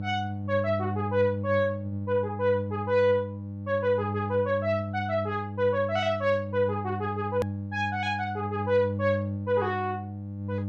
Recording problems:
hum; 50 Hz, harmonics up to 600 Hz, SNR 6 dB
hard cut with a click; at 7.5 s

